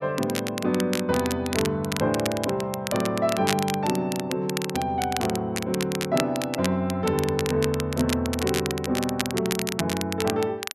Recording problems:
crackling; vinyl, SNR 7 dB

